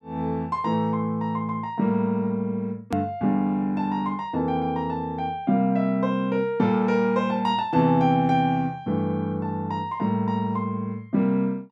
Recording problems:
edit click; at 3 s

